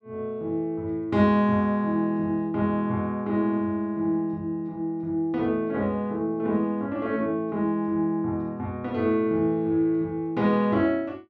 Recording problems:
none

